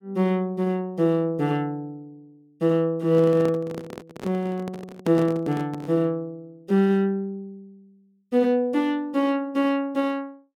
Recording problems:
handling noise; from 3 to 6 s; peak -3 dB vs average level

